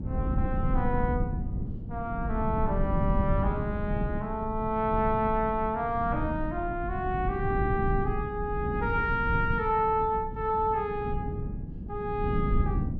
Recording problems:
wind noise; below 170 Hz, SNR 3 dB

